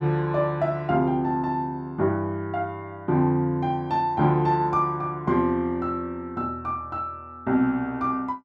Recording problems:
none

